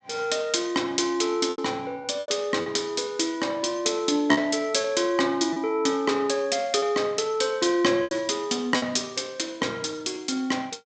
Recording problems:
treble missing; nothing above 8 kHz
packet loss; 5% of the sound replaced, filled with repeated pitch periods

